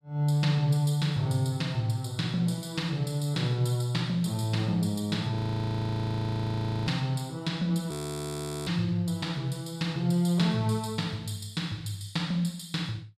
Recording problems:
frozen audio; at 5.5 s for 1.5 s and at 8 s for 1 s

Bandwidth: 14 kHz